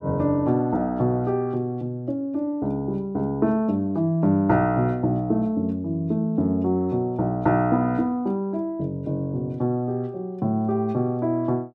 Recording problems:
none

